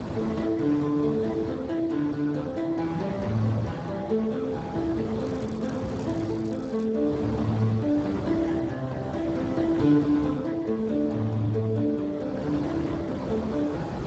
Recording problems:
codec artefacts; Speex, log-spectral distance 4 dB
wind on the microphone; below 680 Hz, SNR 8 dB
crackle; from 5 to 7 s; loose cable, SNR 28 dB

